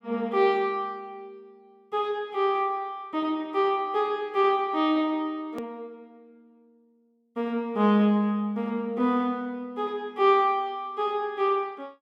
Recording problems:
click at an edit; at 5.5 s

